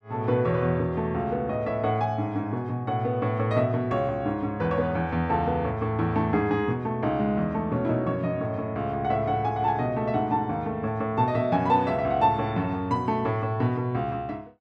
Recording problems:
none

